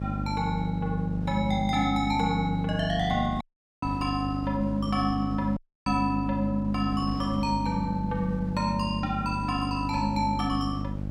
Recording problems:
hum; 50 Hz, harmonics up to 600 Hz, SNR 5 dB
wind noise; below 200 Hz, SNR 18 dB
dropout; at 3.5 s and at 5.5 s

